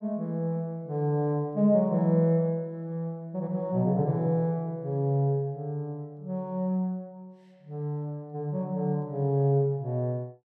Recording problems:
none

